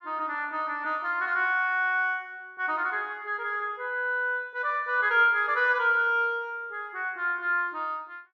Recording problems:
none

